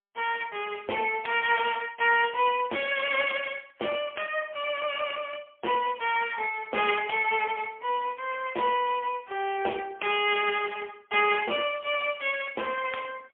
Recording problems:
phone line; 280 Hz to 3.2 kHz, AMR-NB, then MP3

